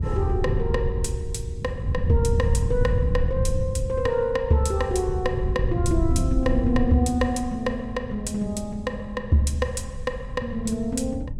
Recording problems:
wind noise; below 110 Hz, SNR 3 dB

